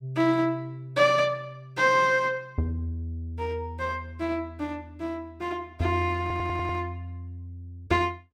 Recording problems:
audio stuttering; at 6 s

